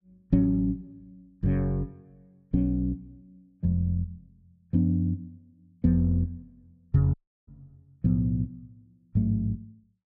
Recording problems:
audio cutting out; at 7 s

